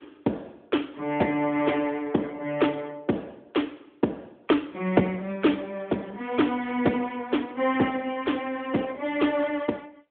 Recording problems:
phone line; 150 Hz to 3.5 kHz, AMR-NB

